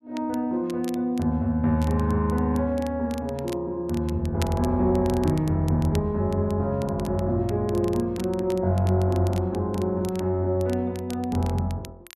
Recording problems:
crackling; vinyl, SNR 21 dB

